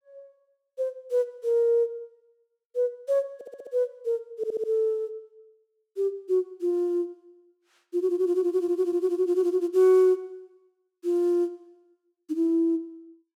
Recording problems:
audio stuttering; at 3.5 s, at 4.5 s and at 8.5 s

